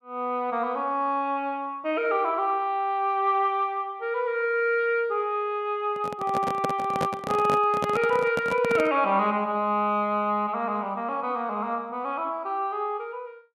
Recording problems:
microphone handling noise; from 6 to 9 s; peak +1 dB vs average level

